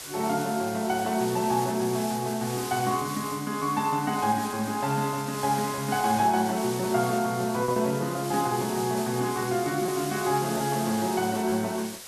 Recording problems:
background hiss; slope +1 dB per octave, SNR 10 dB
lost packets; 1.5% of the sound replaced, filled with repeated pitch periods

